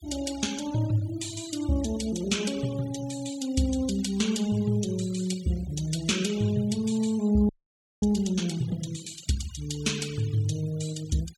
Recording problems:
noise reduction artefacts; signal-to-artefact ratio 16 dB
frozen audio; at 7.5 s for 0.5 s

